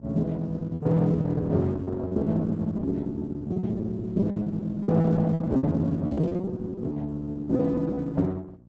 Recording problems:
lossy compression; Opus, log-spectral distance 2 dB, nothing above 7.8 kHz
hum; 60 Hz, harmonics up to 600 Hz, SNR 23 dB
lost packets; 18% of the sound replaced, filled with repeated pitch periods
static burst; at 6 s; peak -25 dB vs average level

